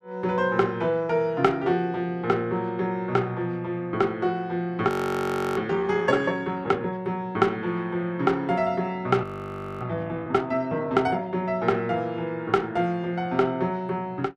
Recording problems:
audio freezing; at 5 s for 0.5 s and at 9 s for 0.5 s

